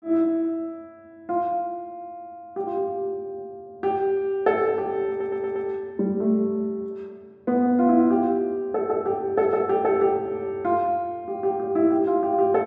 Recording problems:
stutter; at 5 s

